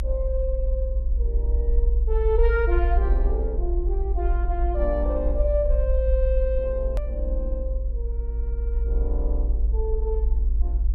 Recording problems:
hum; 60 Hz, harmonics up to 960 Hz, SNR 18 dB
low-frequency rumble; below 56 Hz, strongest tone 54 Hz, SNR -4 dB
hard cut with a click; at 7 s

